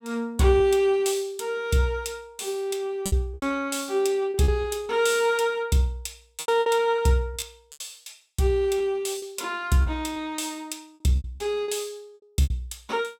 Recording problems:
packet loss; 8% of the sound replaced, filled with repeated pitch periods

